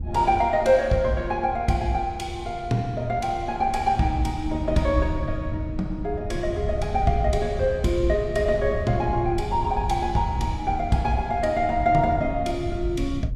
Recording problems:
wind on the microphone; below 110 Hz, SNR 9 dB

